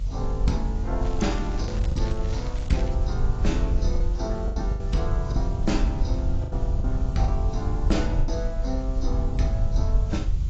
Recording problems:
codec artefacts; AAC, log-spectral distance 2 dB, nothing above 7.3 kHz
hiss; SNR 20 dB
low-frequency rumble; below 72 Hz, SNR -4 dB
lost packets; 5% of the sound replaced, filled with the last packet
crackle; from 1 to 3 s; loose cable, SNR 15 dB

